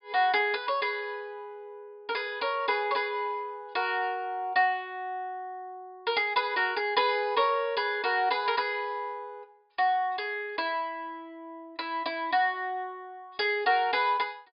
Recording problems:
treble missing; nothing above 4.9 kHz

